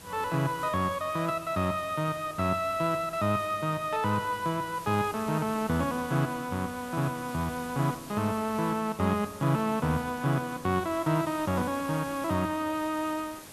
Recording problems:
hiss; slope -3 dB per octave, SNR 16 dB

